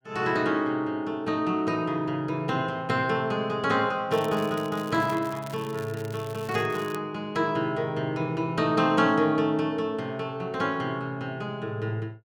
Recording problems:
crackling; from 4 to 7 s; loose cable, SNR 19 dB

